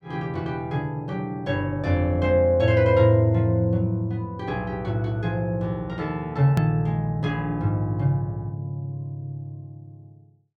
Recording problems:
click at an edit; at 6.5 s

